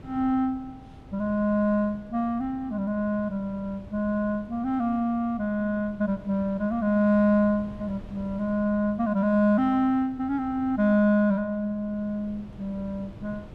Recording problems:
wind noise; below 270 Hz, SNR 20 dB

